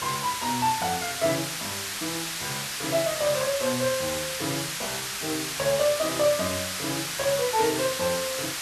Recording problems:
hiss; slope +2 dB per octave, SNR 2 dB

